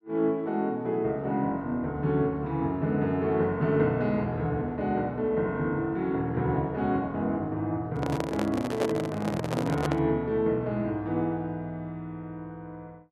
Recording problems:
handling noise; from 8 to 10 s; peak +2 dB vs average level

